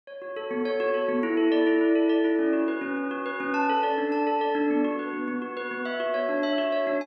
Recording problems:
none

